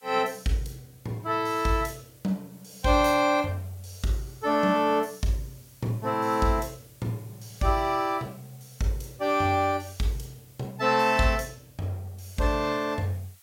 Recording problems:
background hiss; slope +3 dB per octave, SNR 27 dB

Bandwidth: 16.5 kHz